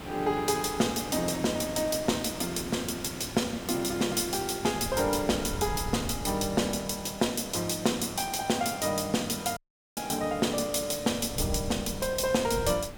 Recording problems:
hiss; slope -5 dB per octave, SNR 14 dB
wind on the microphone; below 120 Hz, SNR 12 dB
dropout; at 9.5 s

